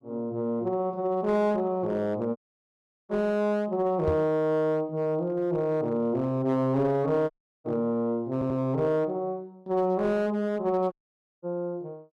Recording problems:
distorted audio; hard clipping, uneven, signal-to-distortion ratio 11 dB
audio cutting out; at 2.5 s for 0.5 s, at 7.5 s and at 11 s for 0.5 s
knock on the microphone; at 4 s; peak 0 dB vs average level
stutter; at 8.5 s

